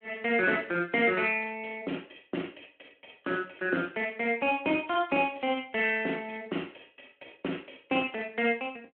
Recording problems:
telephone audio; 240 Hz to 3.2 kHz, Speex

